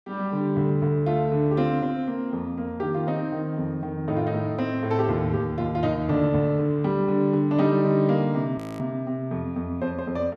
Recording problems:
audio freezing; at 8.5 s

